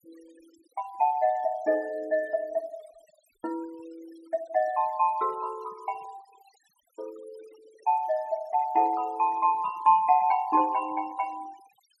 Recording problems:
noise reduction artefacts; signal-to-artefact ratio 25 dB

